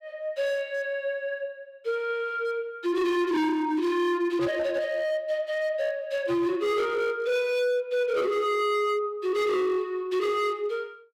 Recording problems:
distortion; hard clipping, signal-to-distortion ratio 7 dB

